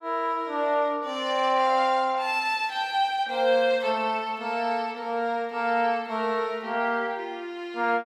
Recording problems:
none

